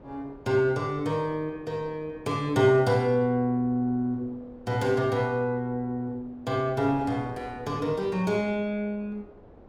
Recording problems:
wind noise; below 590 Hz, SNR 23 dB

